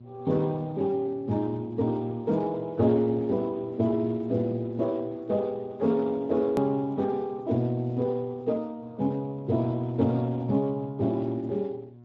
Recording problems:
codec artefacts; Speex, log-spectral distance 2 dB, nothing above 13.1 kHz
electrical hum; 60 Hz, harmonics up to 720 Hz, SNR 22 dB
hard cut with a click; at 6.5 s

